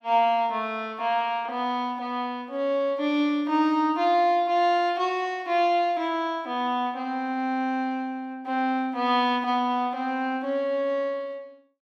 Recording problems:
none

